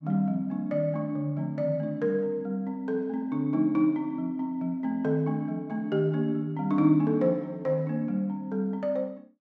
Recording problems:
none

